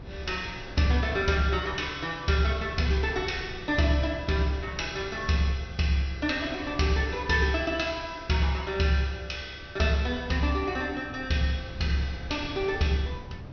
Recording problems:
low-pass filter; nothing above 6.1 kHz
wind noise; below 220 Hz, SNR 17 dB

